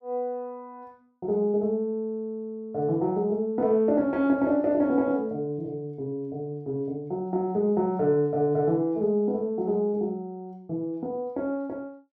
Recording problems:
none

